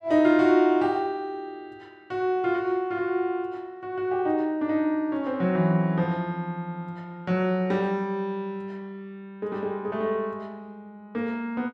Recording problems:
none

